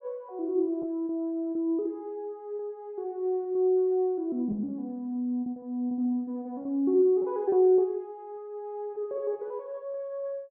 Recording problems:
packet loss; 6% of the sound replaced, filled with repeated pitch periods

